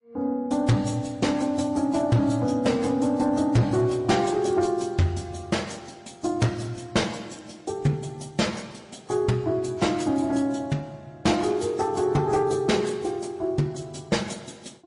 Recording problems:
lossy codec; AAC, then MP3, log-spectral distance 3 dB, nothing above 10.4 kHz
distortion; soft clipping, signal-to-distortion ratio 10 dB

